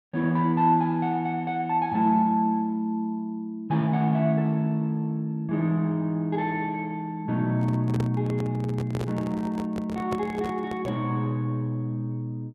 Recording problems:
handling noise; from 7.5 to 11 s; peak -3 dB vs average level

